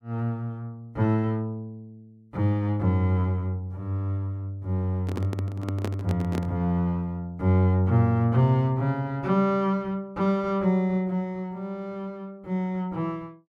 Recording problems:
handling noise; from 5 to 6.5 s; peak -1 dB vs average level

